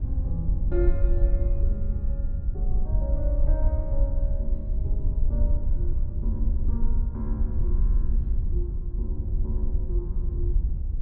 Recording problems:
wind on the microphone; below 60 Hz, SNR -11 dB

